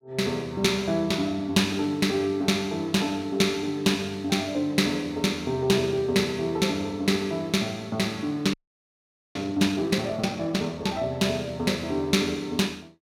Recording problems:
audio freezing; at 8.5 s for 1 s

